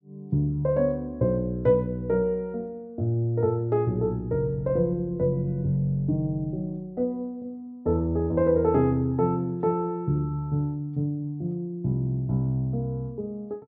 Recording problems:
none

